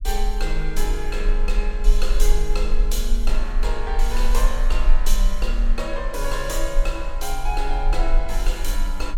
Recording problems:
low-frequency rumble; below 34 Hz, strongest tone 20 Hz, SNR -4 dB

